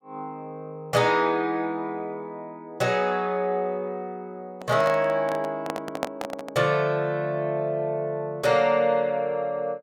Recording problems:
microphone handling noise; from 4.5 to 6.5 s; peak +2 dB vs average level

